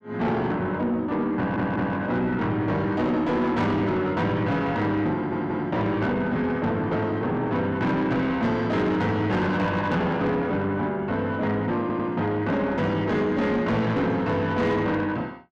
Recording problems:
distortion; soft clipping, signal-to-distortion ratio 10 dB
stutter; at 1.5 s, at 5 s and at 12 s

